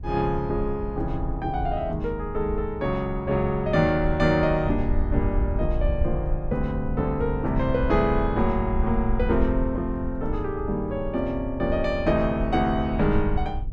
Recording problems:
wind noise; below 70 Hz, SNR 6 dB

